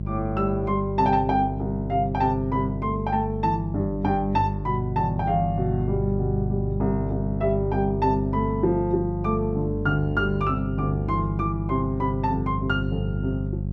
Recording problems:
hum; 50 Hz, harmonics up to 400 Hz, SNR 4 dB

